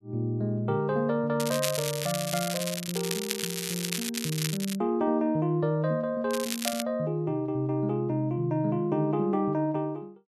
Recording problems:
crackle; from 1.5 to 5 s and at 6.5 s; loose cable, SNR 4 dB

